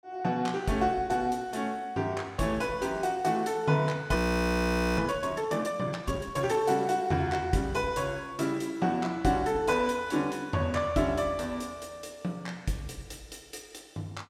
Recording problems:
audio freezing; at 4 s for 1 s

